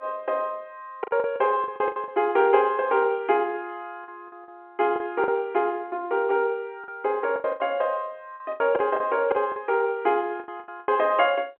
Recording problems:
phone line; 220 Hz to 3.3 kHz, G.711
lost packets; 11% of the sound replaced, filled with the last packet

